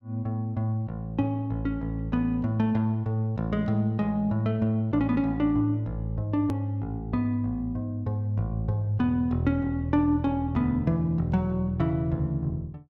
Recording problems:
click at an edit; at 6.5 s

